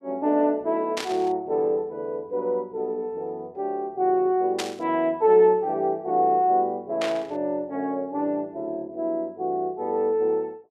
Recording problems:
burst of static; at 1 s, at 4.5 s and at 7 s; peak -1 dB vs average level

